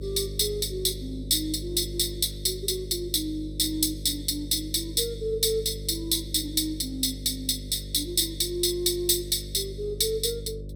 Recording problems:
electrical hum; 50 Hz, harmonics up to 600 Hz, SNR 13 dB

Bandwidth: 17 kHz